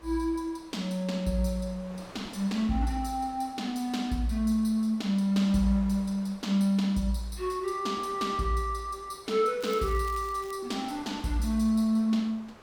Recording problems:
wind noise; below 1.7 kHz, SNR 22 dB
crackle; at 9.5 s; loose cable, SNR 21 dB

